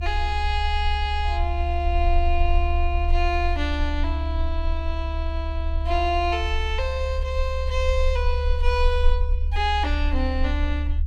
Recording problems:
low-frequency rumble; below 72 Hz, SNR -1 dB

